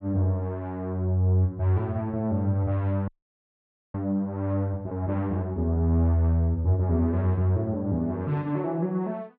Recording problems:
audio freezing; at 3 s for 1 s

